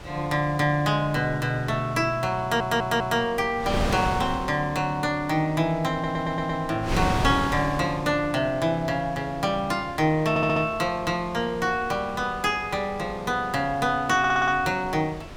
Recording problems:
wind noise; below 990 Hz, SNR 11 dB
stutter; 4 times, first at 2.5 s

